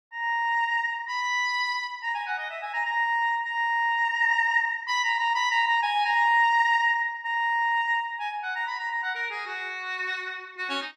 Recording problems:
none

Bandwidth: 13.5 kHz